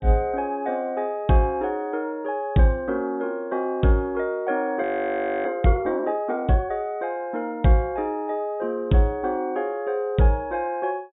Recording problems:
treble cut off; nothing above 4 kHz
frozen audio; at 5 s for 0.5 s

